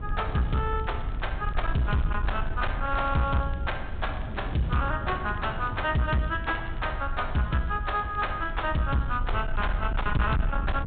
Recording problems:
low-pass filter; nothing above 4 kHz
distortion; soft clipping, signal-to-distortion ratio 11 dB
rumble; below 64 Hz, SNR 7 dB
wind noise; below 190 Hz, SNR 12 dB
crackling; vinyl, SNR 28 dB

